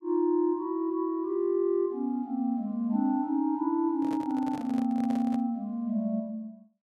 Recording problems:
microphone handling noise; from 4 to 5.5 s; peak -9 dB vs average level

